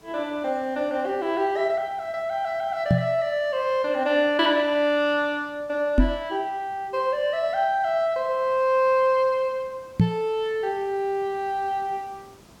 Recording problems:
hiss; slope -4 dB per octave, SNR 28 dB
knock on the microphone; at 3 s, at 6 s and at 10 s; peak +9 dB vs average level

